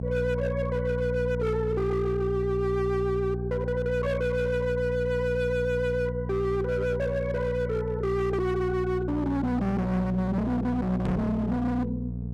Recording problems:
distorted audio; hard clipping, signal-to-distortion ratio 6 dB
hum; 60 Hz, harmonics up to 480 Hz, SNR 5 dB
microphone bump; at 11 s; peak +5 dB vs average level

